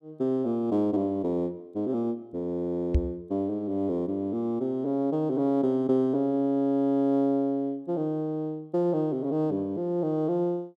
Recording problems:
knock on the microphone; at 3 s; peak +6 dB vs average level

